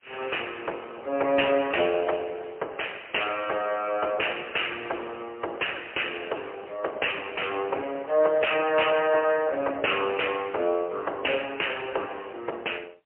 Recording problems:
phone line; 320 Hz to 3.1 kHz, AMR-NB, then MP3

